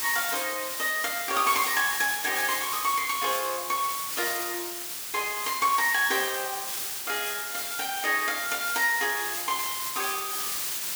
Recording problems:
background hiss; slope +2 dB per octave, SNR 3 dB

